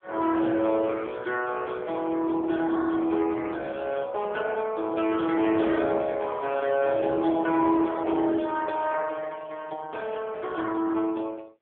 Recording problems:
phone line; 260 Hz to 3.4 kHz, AMR-NB

